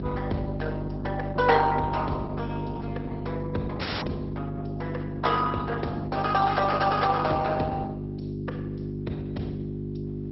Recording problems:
low-pass filter; nothing above 5.5 kHz
codec artefacts; Opus, log-spectral distance 3 dB
electrical hum; 50 Hz, harmonics up to 400 Hz, SNR 5 dB
audio cutting out; at 4 s

